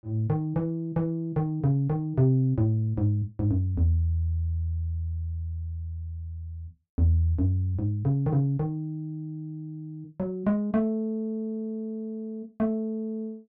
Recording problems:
none

